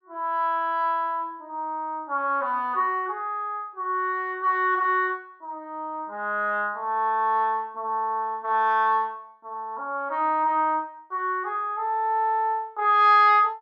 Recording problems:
none

